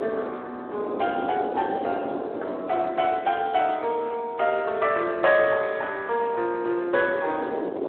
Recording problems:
phone line; 280 Hz to 2.8 kHz, Speex
wind noise; below 590 Hz, SNR 10 dB

